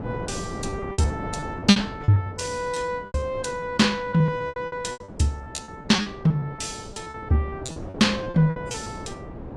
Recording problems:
lossy compression; AAC, log-spectral distance 2 dB
wind on the microphone; below 510 Hz, SNR 13 dB
lost packets; 15% of the sound replaced, filled with repeated pitch periods

